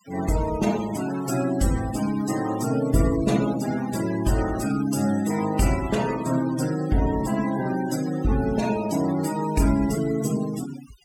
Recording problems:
denoising artefacts; signal-to-artefact ratio 14 dB

